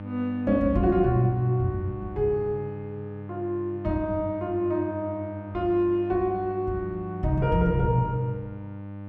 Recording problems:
electrical hum; 50 Hz, harmonics up to 1.5 kHz, SNR 12 dB

